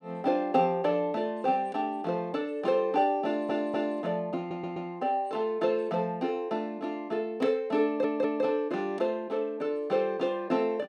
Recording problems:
audio stuttering; at 3.5 s, at 4.5 s and at 8 s

